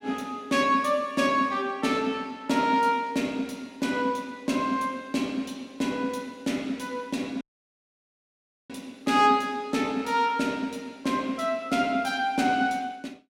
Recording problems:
audio cutting out; at 7.5 s for 1.5 s

